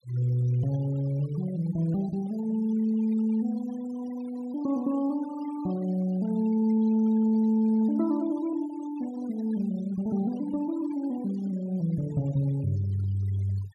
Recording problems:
noise reduction artefacts; signal-to-artefact ratio 22 dB

